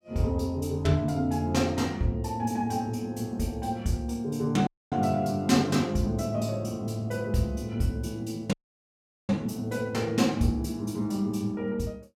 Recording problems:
dropout; at 4.5 s and at 8.5 s for 1 s

